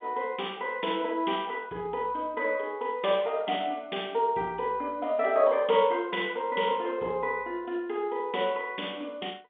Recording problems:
phone line; 260 Hz to 3.5 kHz, G.711

